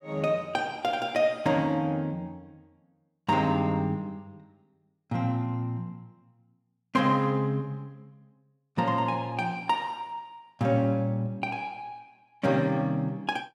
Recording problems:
none

